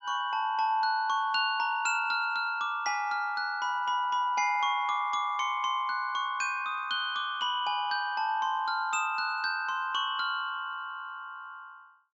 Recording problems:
treble missing; nothing above 7.5 kHz

